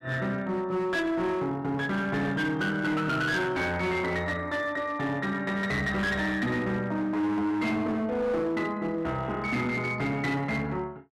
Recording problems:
distortion; hard clipping, signal-to-distortion ratio 11 dB

